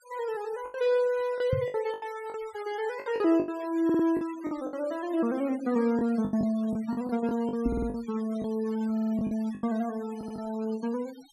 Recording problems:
noise reduction artefacts; signal-to-artefact ratio 20 dB
lost packets; 10% of the sound replaced, filled with the last packet
knock on the microphone; at 1.5 s and at 7.5 s; peak +4 dB vs average level
audio stuttering; 4 times, first at 4 s

